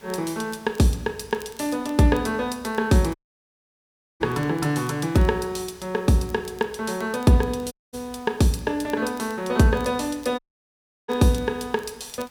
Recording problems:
background hiss; SNR 27 dB
crackling; vinyl, SNR 28 dB
audio cutting out; at 3 s for 1 s, at 7.5 s and at 10 s for 0.5 s

